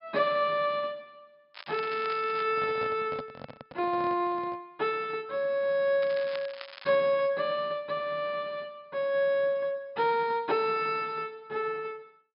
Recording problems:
treble cut off; nothing above 5.5 kHz
crackling; at 1.5 s and at 6 s; loose cable, SNR 16 dB
handling noise; from 2.5 to 4.5 s; peak -6 dB vs average level

